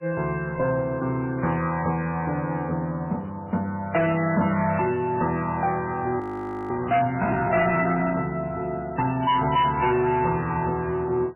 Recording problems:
lossy codec; MP3, log-spectral distance 3 dB, nothing above 2.7 kHz
distortion; hard clipping, signal-to-distortion ratio 10 dB
frozen audio; at 6 s for 0.5 s

